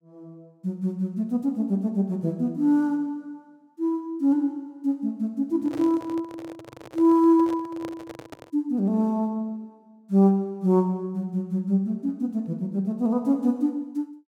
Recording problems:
microphone handling noise; from 5.5 to 8.5 s; peak -10 dB vs average level

